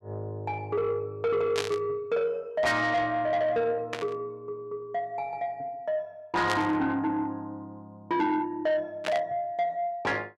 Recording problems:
distortion; soft clipping, signal-to-distortion ratio 10 dB
burst of static; 4 times, first at 1.5 s; peak +2 dB vs average level

